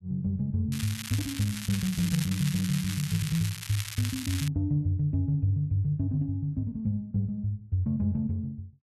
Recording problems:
crackling; from 0.5 to 4.5 s; loose cable, SNR 8 dB

